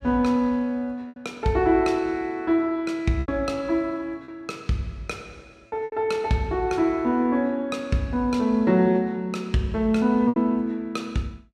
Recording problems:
lost packets; 3% of the sound replaced, filled with repeated pitch periods

